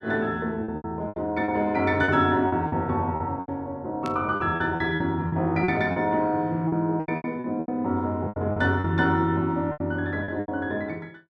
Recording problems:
lost packets; 13% of the sound replaced, filled with repeated pitch periods
static burst; at 4 s; peak -9 dB vs average level

